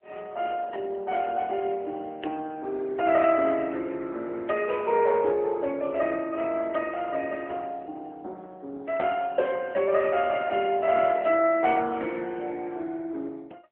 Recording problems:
phone line; 320 Hz to 3.2 kHz, AMR-NB

